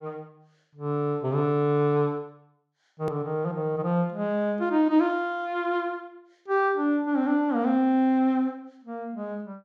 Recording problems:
click at an edit; at 3 s

